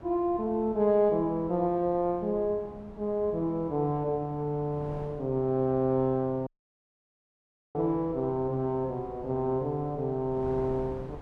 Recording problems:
wind on the microphone; below 500 Hz, SNR 18 dB
audio cutting out; at 6.5 s for 1.5 s

